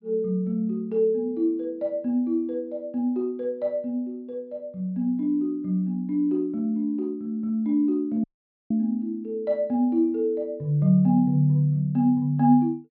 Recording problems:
treble cut off; nothing above 5.5 kHz
dropout; at 8 s

